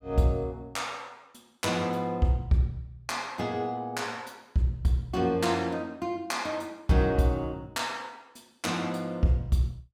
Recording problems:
none

